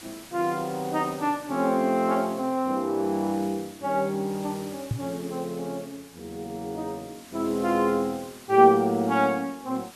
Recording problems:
hiss; slope 0 dB per octave, SNR 20 dB
microphone bump; at 5 s; peak +1 dB vs average level

